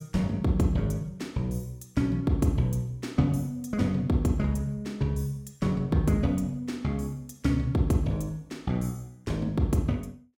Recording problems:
none

